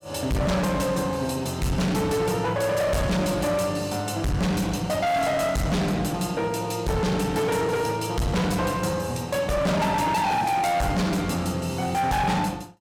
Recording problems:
distortion; hard clipping, signal-to-distortion ratio 6 dB

